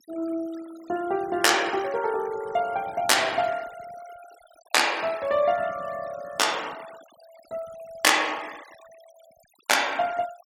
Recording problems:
noise reduction artefacts; signal-to-artefact ratio 21 dB

